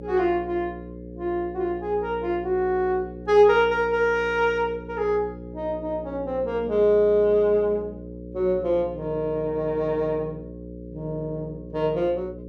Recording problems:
hum; 60 Hz, harmonics up to 540 Hz, SNR 14 dB

